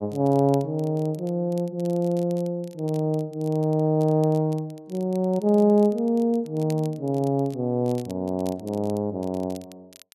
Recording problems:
crackling; vinyl, SNR 26 dB

